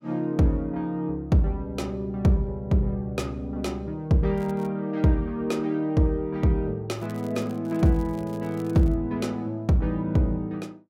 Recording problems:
crackling; at 4.5 s and from 7 to 9 s; loose cable, SNR 28 dB

